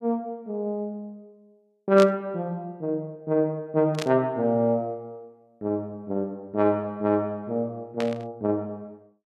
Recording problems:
burst of static; at 2 s, at 4 s and at 8 s; peak -2 dB vs average level

